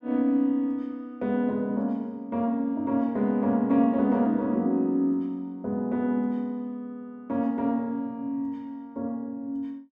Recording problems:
none

